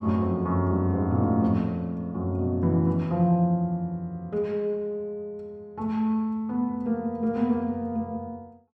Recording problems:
none

